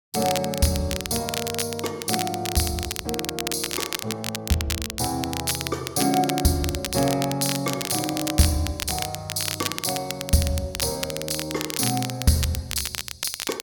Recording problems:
crackle; vinyl, SNR 5 dB

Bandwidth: 18 kHz